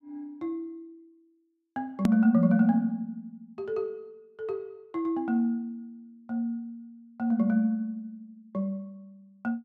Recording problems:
hard cut with a click; at 2 s

